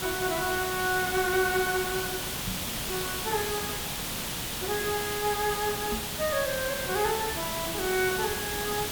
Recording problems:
background hiss; slope -1 dB per octave, SNR 1 dB
microphone bump; at 2.5 s and at 6 s; peak -3 dB vs average level

